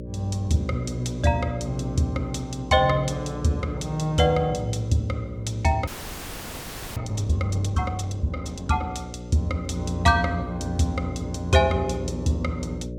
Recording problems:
electrical hum; 60 Hz, harmonics up to 600 Hz, SNR 9 dB
audio freezing; at 6 s for 1 s

